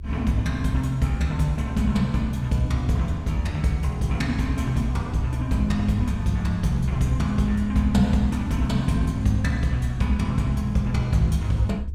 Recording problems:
mains hum; 50 Hz, harmonics up to 450 Hz, SNR 25 dB
rumble; below 72 Hz, strongest tone 70 Hz, SNR 11 dB

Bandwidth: 17 kHz